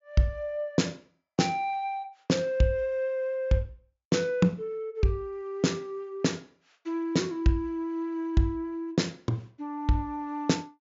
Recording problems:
treble cut off; nothing above 7.3 kHz

